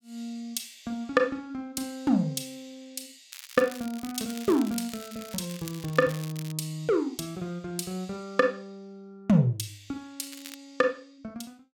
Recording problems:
crackling; from 3.5 to 6.5 s and at 10 s; loose cable, SNR 15 dB

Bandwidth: 17 kHz